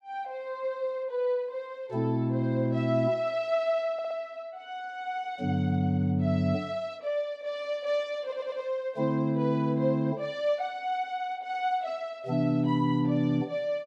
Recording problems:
stutter; at 4 s and at 8 s

